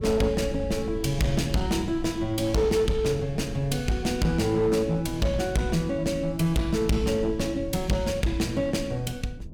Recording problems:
distorted audio; hard clipping, uneven, signal-to-distortion ratio 10 dB
rumble; below 130 Hz, SNR 13 dB

